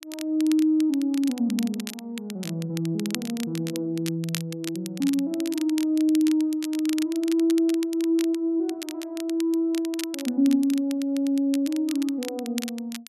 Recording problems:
crackling; vinyl, SNR 14 dB

